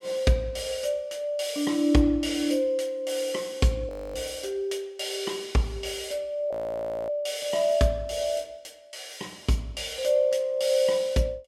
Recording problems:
frozen audio; at 4 s and at 6.5 s for 0.5 s

